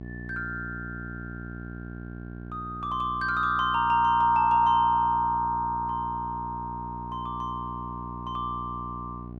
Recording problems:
mains hum; 60 Hz, harmonics up to 780 Hz, SNR 13 dB

